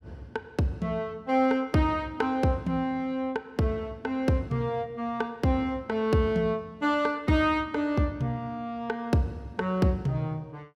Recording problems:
none

